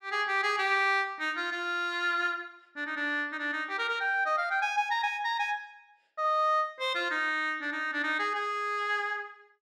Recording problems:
none

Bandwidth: 14 kHz